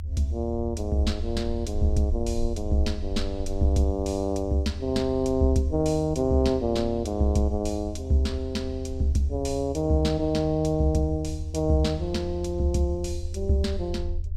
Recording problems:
low-frequency rumble; below 80 Hz, SNR 8 dB

